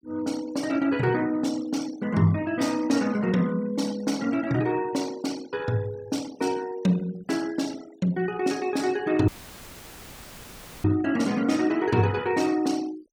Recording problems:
noise reduction artefacts; signal-to-artefact ratio 20 dB
audio cutting out; at 9.5 s for 1.5 s; filled with static

